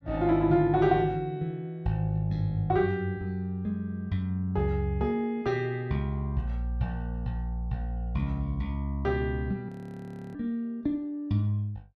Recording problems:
audio freezing; at 9.5 s for 0.5 s

